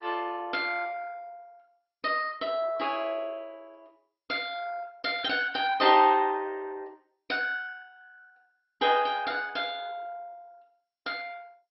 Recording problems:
codec artefacts; MP2, log-spectral distance 4 dB, nothing above 4.5 kHz
static burst; at 5.5 s; peak -15 dB vs average level

